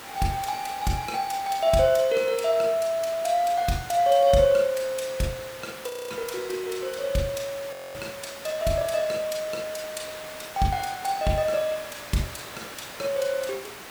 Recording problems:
hiss; SNR 14 dB
frozen audio; at 6 s and at 7.5 s

